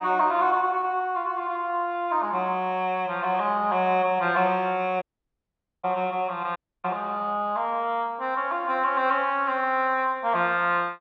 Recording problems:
dropout; at 5 s for 1 s and at 6.5 s

